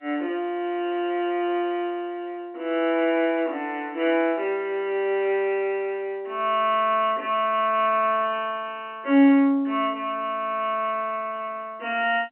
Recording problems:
phone line; 240 Hz to 3.1 kHz, G.711

